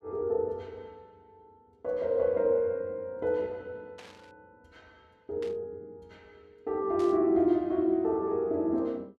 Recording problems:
static burst; at 4 s, at 5.5 s and at 7 s; peak -15 dB vs average level

